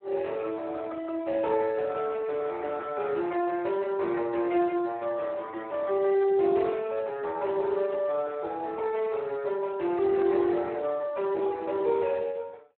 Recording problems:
phone line; 300 Hz to 3.1 kHz, Speex

